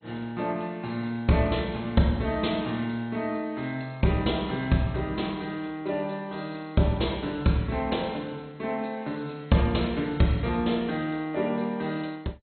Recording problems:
lossy codec; MP2, log-spectral distance 4 dB, nothing above 4.2 kHz

